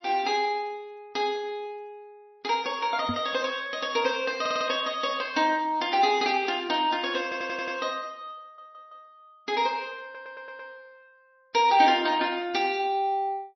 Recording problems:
codec artefacts; MP3, log-spectral distance 3 dB, nothing above 5.8 kHz
knock on the microphone; at 3 s; peak -1 dB vs average level
audio stuttering; 4 times, first at 4.5 s

